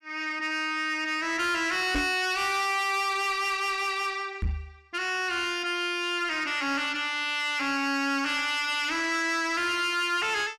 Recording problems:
distortion; soft clipping, signal-to-distortion ratio 11 dB
microphone bump; at 2 s and at 4.5 s; peak +1 dB vs average level

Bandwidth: 14.5 kHz